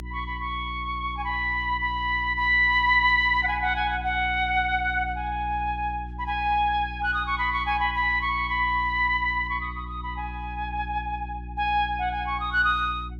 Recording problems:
hum; 60 Hz, harmonics up to 360 Hz, SNR 13 dB

